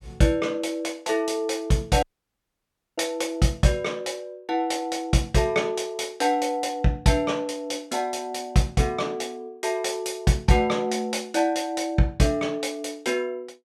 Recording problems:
audio cutting out; at 2 s for 1 s

